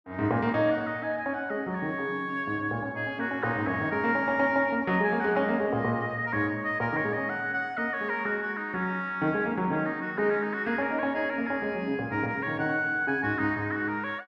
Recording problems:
none

